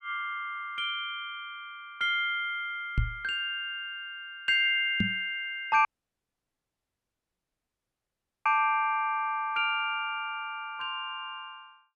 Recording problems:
microphone bump; at 3 s and at 5 s; peak +5 dB vs average level
dropout; at 6 s for 2.5 s

